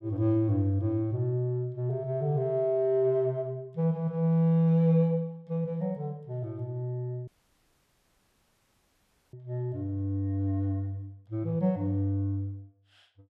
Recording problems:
audio cutting out; at 7.5 s for 2 s

